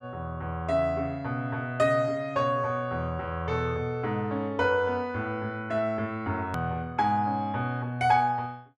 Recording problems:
edit click; at 6.5 s

